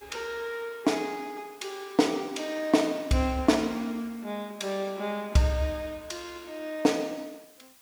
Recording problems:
hiss; slope 0 dB per octave, SNR 25 dB

